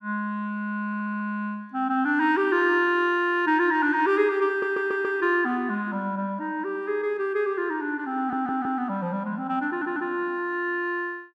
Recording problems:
audio stuttering; 4 times, first at 1 s

